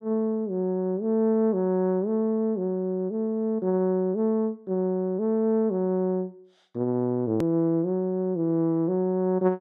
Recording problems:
click at an edit; at 7.5 s

